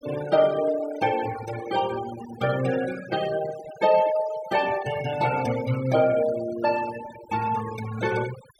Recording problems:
noise reduction artefacts; signal-to-artefact ratio 13 dB

